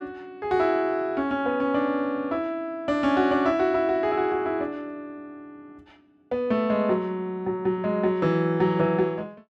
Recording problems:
none

